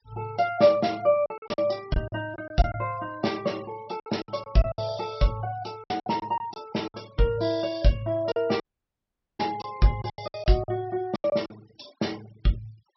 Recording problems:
treble cut off; nothing above 5.7 kHz
denoising artefacts; signal-to-artefact ratio 23 dB
lost packets; 10% of the sound replaced, filled with silence
audio cutting out; at 8.5 s for 1 s

